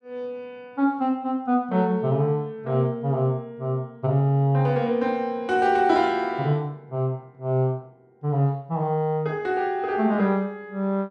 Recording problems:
none

